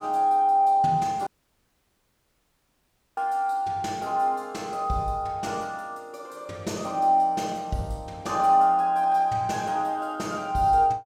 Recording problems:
audio cutting out; at 1.5 s for 2 s

